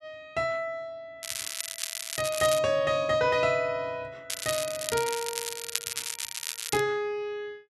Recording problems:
crackle; from 1 to 2.5 s and from 4.5 to 7 s; loose cable, SNR 4 dB

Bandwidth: 12 kHz